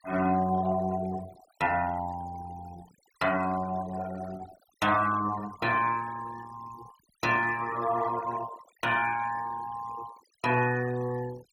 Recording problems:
noise reduction artefacts; signal-to-artefact ratio 18 dB

